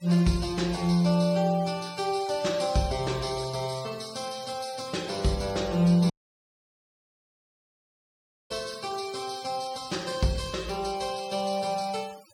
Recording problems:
noise reduction artefacts; signal-to-artefact ratio 17 dB
audio cutting out; at 6 s for 2.5 s

